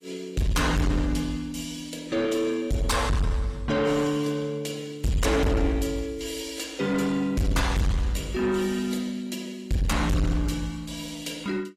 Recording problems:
lossy codec; AAC, log-spectral distance 3 dB
distorted audio; soft clipping, signal-to-distortion ratio 6 dB

